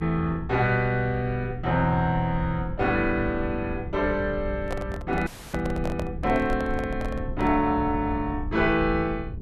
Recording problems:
hum; 60 Hz, harmonics up to 420 Hz, SNR 16 dB
rumble; below 110 Hz, SNR 11 dB
handling noise; from 4.5 to 7.5 s; peak -3 dB vs average level
dropout; at 5.5 s

